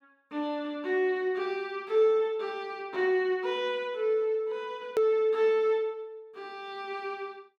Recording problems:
edit click; at 5 s

